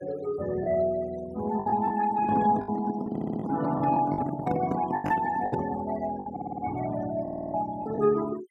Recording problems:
denoising artefacts; signal-to-artefact ratio 16 dB
packet loss; 8% of the sound replaced, filled with the last packet
handling noise; from 2 to 6 s; peak +2 dB vs average level
audio stuttering; at 3 s, at 6.5 s and at 7 s

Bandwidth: 16 kHz